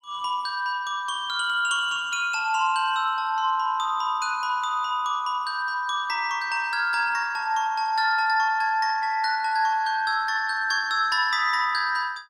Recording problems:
none

